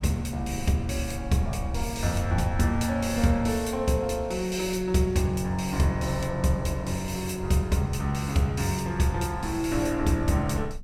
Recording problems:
low-frequency rumble; below 100 Hz, SNR 13 dB

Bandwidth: 17.5 kHz